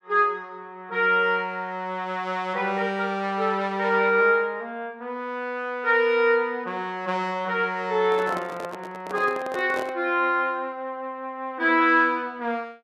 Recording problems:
handling noise; from 8 to 10 s; peak -5 dB vs average level

